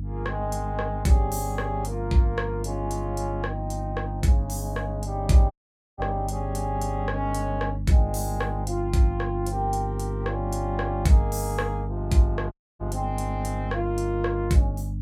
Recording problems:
hum; 50 Hz, harmonics up to 300 Hz, SNR 5 dB
audio cutting out; at 5.5 s and at 13 s

